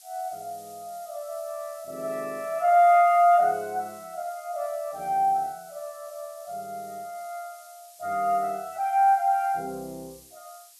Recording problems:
background hiss; slope +5 dB per octave, SNR 24 dB

